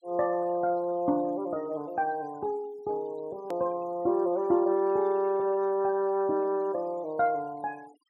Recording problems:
denoising artefacts; signal-to-artefact ratio 27 dB
hard cut with a click; at 3.5 s

